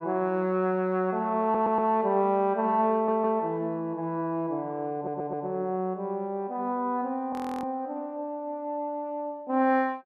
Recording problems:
stutter; at 1.5 s, at 3 s and at 5 s
frozen audio; at 7.5 s

